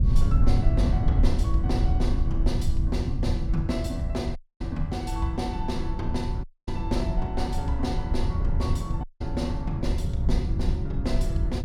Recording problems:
low-frequency rumble; below 86 Hz, SNR -4 dB
audio cutting out; at 4.5 s, at 6.5 s and at 9 s

